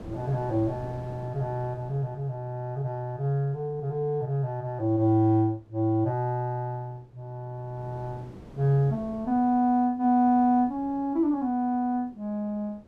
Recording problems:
wind on the microphone; below 430 Hz, SNR 21 dB

